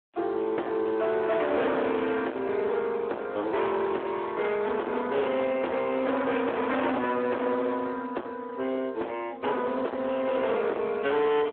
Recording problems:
telephone audio; 280 Hz to 3.6 kHz, Speex
distorted audio; hard clipping, signal-to-distortion ratio 7 dB

